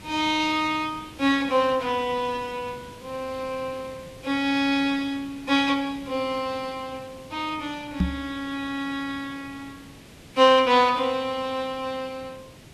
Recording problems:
lossy codec; Vorbis, log-spectral distance 3 dB, nothing above 12.7 kHz
background hiss; SNR 20 dB
microphone bump; at 8 s; peak +5 dB vs average level

